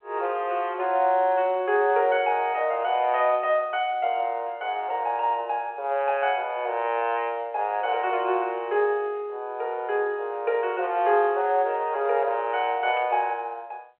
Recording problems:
telephone audio; 370 Hz to 3.3 kHz, G.711
static burst; at 13 s; peak -13 dB vs average level

